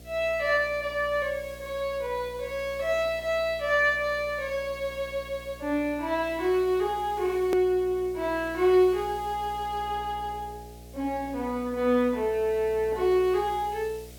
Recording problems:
hum; 60 Hz, harmonics up to 720 Hz, SNR 20 dB
background hiss; slope +3 dB per octave, SNR 25 dB
hard cut with a click; at 7.5 s

